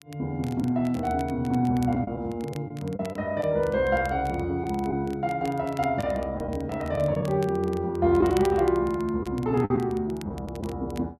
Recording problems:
crackle; vinyl, SNR 23 dB
packet loss; 4% of the sound replaced, filled with the last packet

